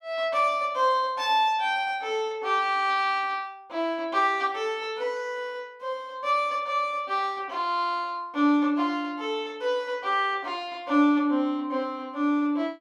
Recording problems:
none

